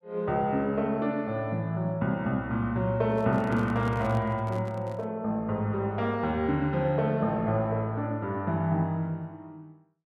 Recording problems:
handling noise; from 3 to 5 s; peak -8 dB vs average level

